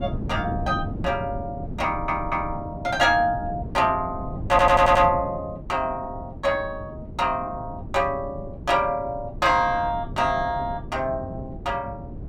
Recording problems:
wind noise; below 240 Hz, SNR 11 dB
audio stuttering; at 2 s and at 4.5 s

